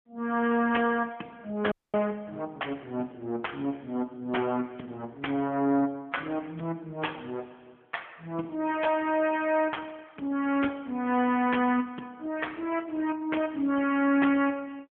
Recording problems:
telephone audio; 170 Hz to 3.3 kHz, AMR-NB
frozen audio; at 1.5 s

